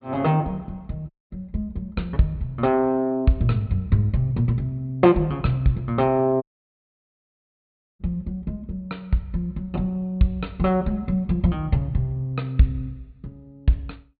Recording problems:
treble missing; nothing above 4.6 kHz
audio cutting out; at 1 s and at 6.5 s for 1.5 s

